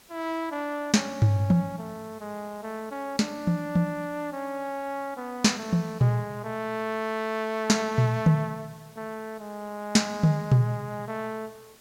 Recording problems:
hiss; slope -2 dB per octave, SNR 26 dB

